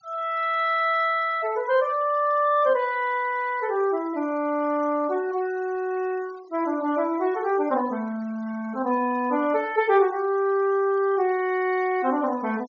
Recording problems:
low-pass filter; nothing above 6.9 kHz
noise reduction artefacts; signal-to-artefact ratio 24 dB

